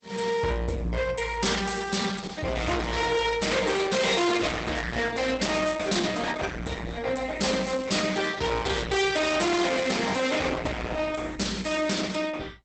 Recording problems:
lossy compression; Opus, log-spectral distance 5 dB, nothing above 8 kHz
distortion; hard clipping, signal-to-distortion ratio 6 dB

